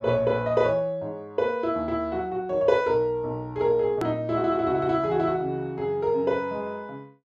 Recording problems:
hard cut with a click; at 4 s

